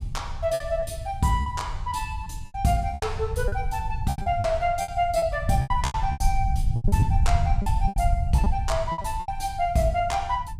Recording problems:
low-frequency rumble; below 96 Hz, SNR 3 dB
lost packets; 11% of the sound replaced, filled with repeated pitch periods

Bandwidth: 15.5 kHz